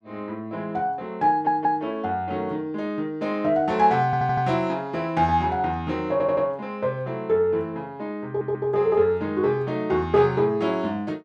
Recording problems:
stutter; 4 times, first at 1.5 s

